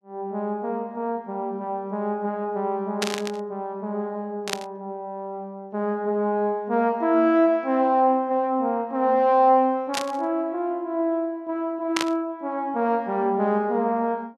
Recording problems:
burst of static; 4 times, first at 3 s; peak +3 dB vs average level

